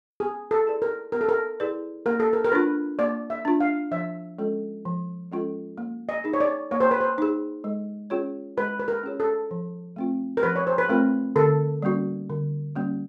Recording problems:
none

